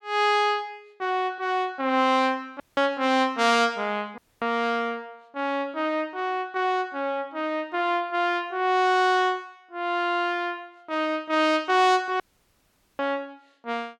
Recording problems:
audio cutting out; at 2.5 s, at 4 s and at 12 s for 1 s

